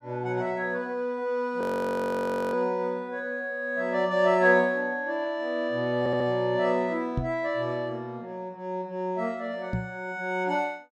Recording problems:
audio freezing; at 1.5 s for 1 s
audio stuttering; at 6 s
microphone thump; at 7 s and at 9.5 s; peak +2 dB vs average level

